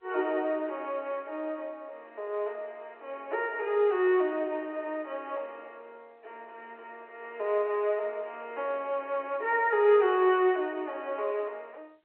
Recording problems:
phone line; 320 Hz to 3.3 kHz, G.711

